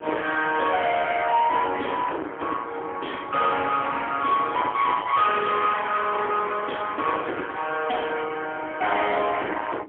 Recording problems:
phone line; 280 Hz to 3.4 kHz, AMR-NB, then MP3
distortion; soft clipping, signal-to-distortion ratio 7 dB
wind noise; below 1.2 kHz, SNR 17 dB

